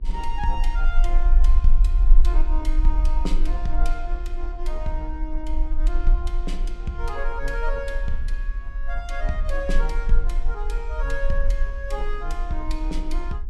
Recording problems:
electrical hum; 60 Hz, harmonics up to 840 Hz, SNR 23 dB
low-frequency rumble; below 38 Hz, strongest tone 18 Hz, SNR -6 dB

